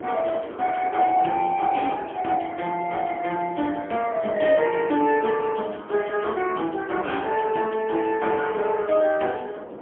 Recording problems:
phone line; 240 Hz to 3.3 kHz, AMR-NB, then MP3
wind on the microphone; below 640 Hz, SNR 16 dB

